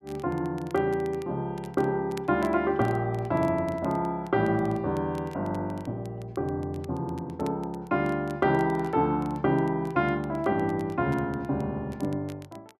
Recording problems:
crackling; vinyl, SNR 26 dB

